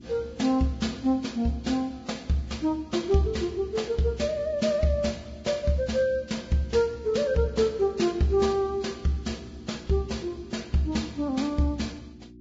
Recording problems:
lossy codec; Vorbis, log-spectral distance 3 dB, nothing above 7.3 kHz
hum; 60 Hz, harmonics up to 360 Hz, SNR 22 dB

